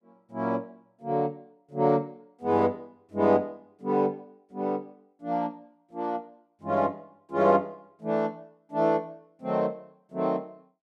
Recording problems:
none

